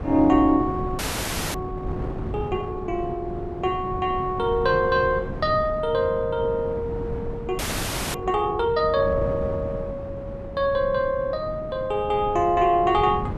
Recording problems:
wind noise; below 300 Hz, SNR 10 dB
audio freezing; at 1 s for 0.5 s and at 7.5 s for 0.5 s

